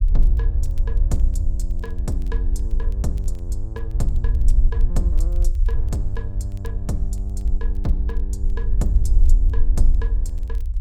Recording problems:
rumble; below 50 Hz, strongest tone 20 Hz, SNR -7 dB
crackle; vinyl, SNR 28 dB

